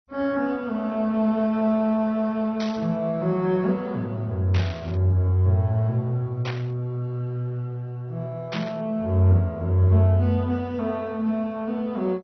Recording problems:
codec artefacts; MP2, log-spectral distance 2 dB, nothing above 5.7 kHz
static burst; 4 times, first at 2.5 s; peak -5 dB vs average level

